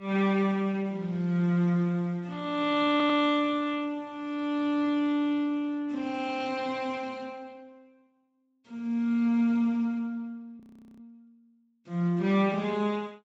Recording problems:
lossy compression; Speex, log-spectral distance 2 dB
stutter; at 3 s
frozen audio; at 11 s

